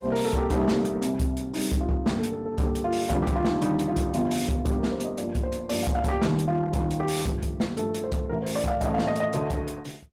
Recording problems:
codec artefacts; Opus, log-spectral distance 3 dB, nothing above 18.3 kHz
distorted audio; hard clipping, signal-to-distortion ratio 12 dB

